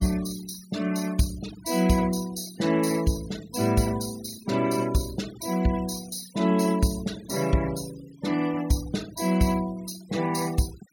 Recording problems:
noise reduction artefacts; signal-to-artefact ratio 16 dB

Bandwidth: 17 kHz